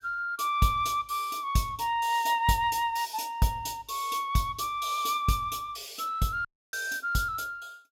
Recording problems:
audio cutting out; at 6.5 s

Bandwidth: 16.5 kHz